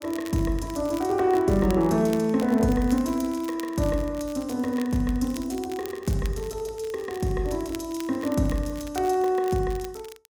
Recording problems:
crackling; vinyl, SNR 20 dB

